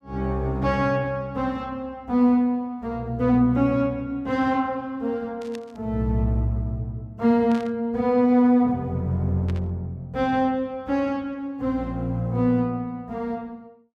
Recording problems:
static burst; at 5.5 s, at 7.5 s and at 9.5 s; peak -12 dB vs average level

